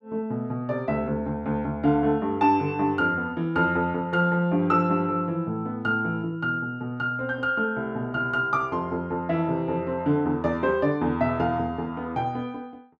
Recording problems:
none

